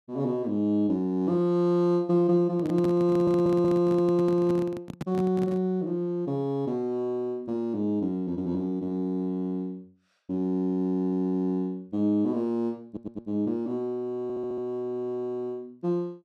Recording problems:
microphone handling noise; from 2.5 to 5.5 s; peak -2 dB vs average level
audio stuttering; 4 times, first at 3 s

